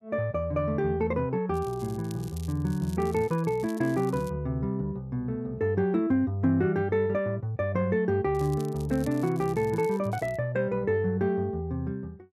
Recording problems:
crackling; from 1.5 to 4.5 s and from 8.5 to 10 s; loose cable, SNR 23 dB

